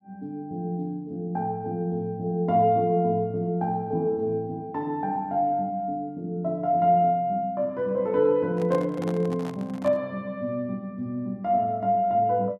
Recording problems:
microphone handling noise; from 8.5 to 10 s; peak -8 dB vs average level

